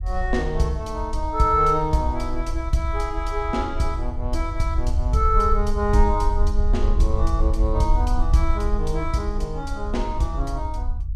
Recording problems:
rumble; below 62 Hz, SNR 2 dB

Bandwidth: 14.5 kHz